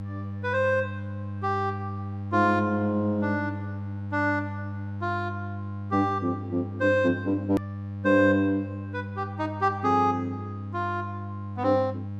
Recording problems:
electrical hum; 50 Hz, harmonics up to 800 Hz, SNR 8 dB
edit click; at 7.5 s

